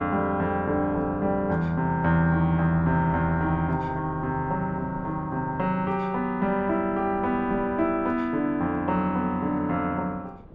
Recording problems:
wind on the microphone; below 370 Hz, SNR 20 dB

